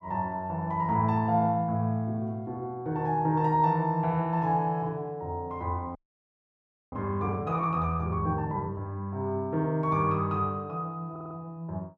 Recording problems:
audio freezing; at 6 s for 1 s
stutter; at 11 s

